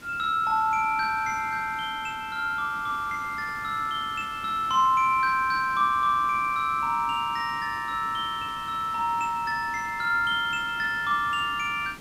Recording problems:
background hiss; slope -3 dB per octave, SNR 19 dB

